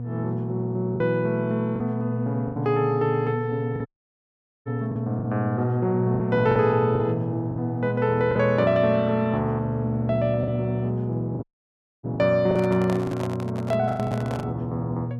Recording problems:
hum; 60 Hz, harmonics up to 720 Hz, SNR 5 dB
packet loss; 6% of the sound replaced, filled with the last packet
audio cutting out; at 4 s for 1 s and at 11 s for 0.5 s
handling noise; from 12 to 14 s; peak -4 dB vs average level

